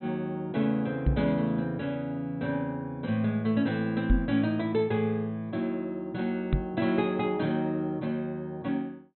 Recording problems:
treble cut off; nothing above 4.1 kHz
microphone thump; at 1 s, at 4 s and at 6.5 s; peak +8 dB vs average level

